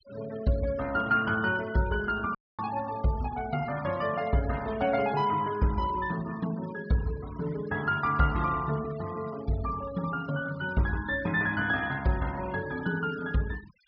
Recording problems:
treble missing; nothing above 5.5 kHz
noise reduction artefacts; signal-to-artefact ratio 17 dB
dropout; at 2.5 s

